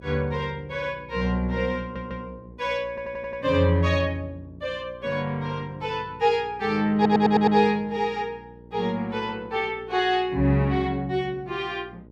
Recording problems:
electrical hum; 60 Hz, harmonics up to 600 Hz, SNR 23 dB
audio stuttering; at 2 s, at 3 s and at 7 s

